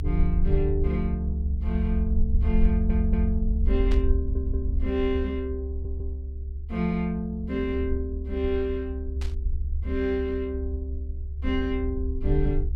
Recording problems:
low-frequency rumble; below 70 Hz, SNR -1 dB
stutter; at 2.5 s, at 4 s and at 5.5 s
burst of static; at 4 s and at 9 s; peak -7 dB vs average level

